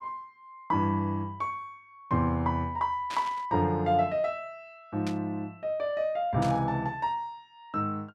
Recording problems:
static burst; at 3 s, at 5 s and at 6.5 s; peak -6 dB vs average level

